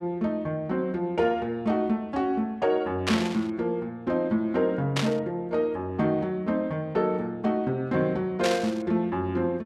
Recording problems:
burst of static; at 3 s, at 5 s and at 8.5 s; peak +4 dB vs average level

